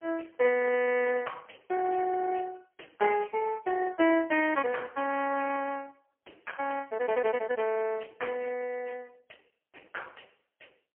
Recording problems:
telephone audio; 280 Hz to 2.9 kHz, AMR-NB, then MP3

